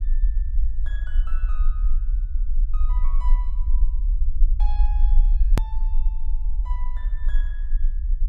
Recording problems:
low-frequency rumble; below 42 Hz, SNR -20 dB
edit click; at 5.5 s

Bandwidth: 14.5 kHz